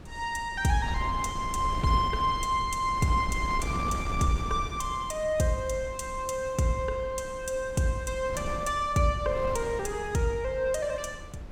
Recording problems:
wind noise; below 260 Hz, SNR 10 dB

